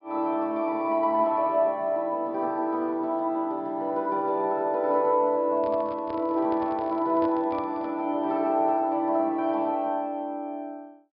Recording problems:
low-pass filter; nothing above 5.5 kHz
microphone handling noise; from 5.5 to 8 s; peak -10 dB vs average level

